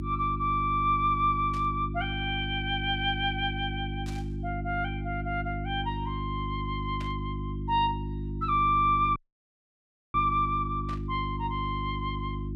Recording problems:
electrical hum; 50 Hz, harmonics up to 350 Hz, SNR 5 dB
static burst; 4 times, first at 1.5 s; peak -11 dB vs average level
dropout; at 9 s for 1 s

